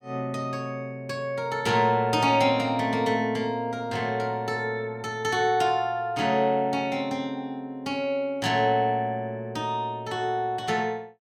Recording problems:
none

